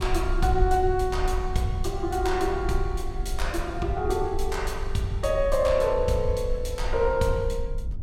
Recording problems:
rumble; below 58 Hz, SNR 6 dB

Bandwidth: 16.5 kHz